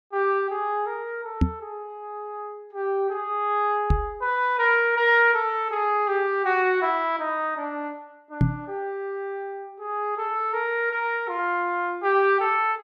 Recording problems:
knock on the microphone; at 1.5 s, at 4 s and at 8.5 s; peak +6 dB vs average level

